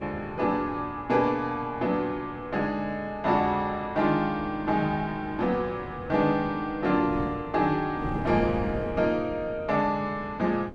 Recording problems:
wind noise; below 330 Hz, SNR 13 dB

